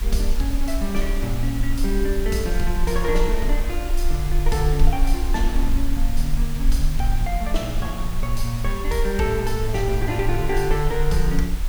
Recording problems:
hiss; slope -2 dB per octave, SNR 11 dB
rumble; below 40 Hz, strongest tone 22 Hz, SNR 1 dB

